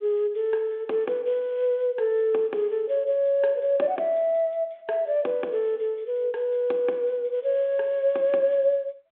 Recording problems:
phone line; 300 Hz to 3.7 kHz, G.726

